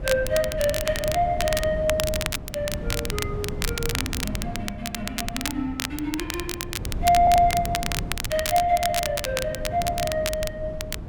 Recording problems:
wind on the microphone; below 190 Hz, SNR 8 dB
crackling; vinyl, SNR 5 dB
stutter; at 7 s

